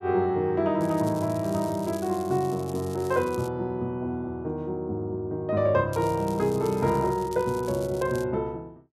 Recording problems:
crackle; from 1 to 3.5 s and from 6 to 8 s; loose cable, SNR 19 dB

